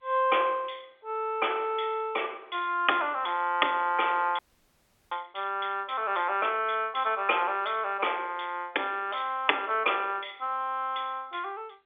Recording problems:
telephone audio; 300 Hz to 3.5 kHz, G.711
frozen audio; at 4.5 s for 0.5 s

